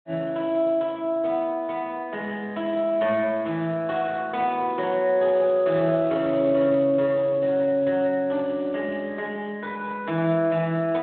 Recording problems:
telephone audio; 190 Hz to 3.8 kHz, Speex

